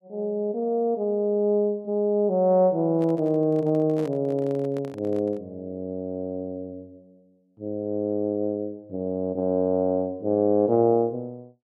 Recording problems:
handling noise; from 3 to 5.5 s; peak -11 dB vs average level

